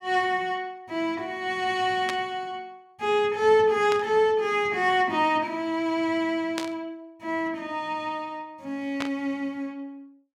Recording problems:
burst of static; 4 times, first at 2 s; peak -1 dB vs average level

